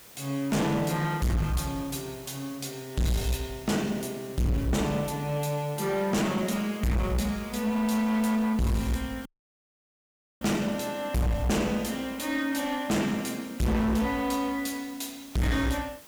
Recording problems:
distorted audio; hard clipping, uneven, signal-to-distortion ratio 6 dB
hiss; slope -2 dB per octave, SNR 20 dB
audio cutting out; at 9.5 s for 1 s

